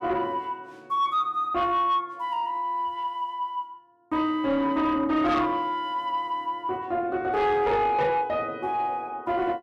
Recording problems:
distortion; soft clipping, signal-to-distortion ratio 12 dB

